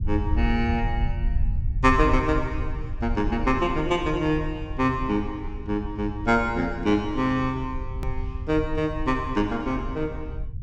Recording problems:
rumble; below 80 Hz, SNR 7 dB
click at an edit; at 8 s

